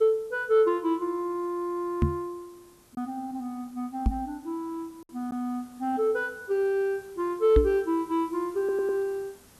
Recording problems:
hiss; slope -3 dB per octave, SNR 27 dB
packet loss; 1% of the sound replaced, filled with silence
microphone bump; at 2 s, at 4 s and at 7.5 s; peak +8 dB vs average level
stutter; at 8.5 s

